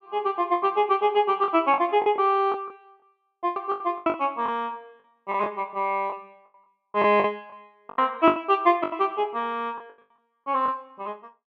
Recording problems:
lost packets; 12% of the sound replaced, filled with the last packet

